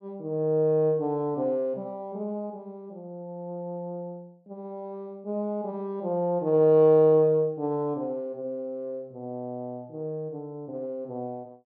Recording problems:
none

